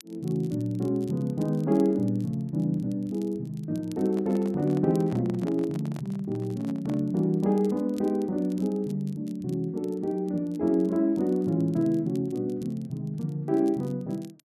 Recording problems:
crackle; vinyl, SNR 29 dB
handling noise; from 4 to 7 s; peak -10 dB vs average level

